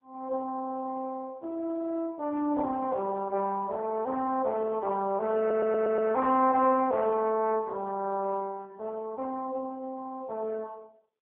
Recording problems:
telephone audio; 240 Hz to 2.8 kHz, AMR-NB
stutter; at 5.5 s

